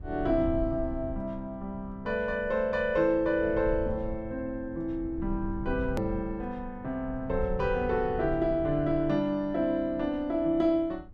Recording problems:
rumble; below 94 Hz, SNR 12 dB
hard cut with a click; at 6 s

